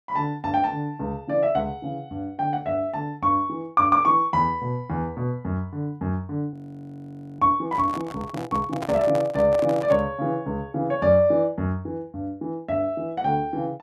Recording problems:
frozen audio; at 6.5 s for 1 s
handling noise; from 7.5 to 10 s; peak -4 dB vs average level

